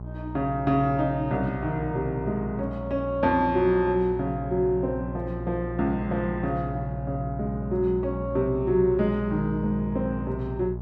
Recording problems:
hum; 60 Hz, harmonics up to 1 kHz, SNR 9 dB

